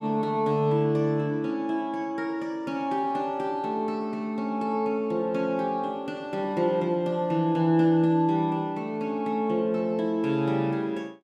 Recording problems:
none

